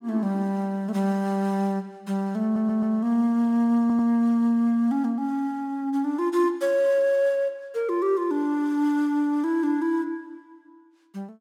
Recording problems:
stutter; at 2.5 s and at 4 s

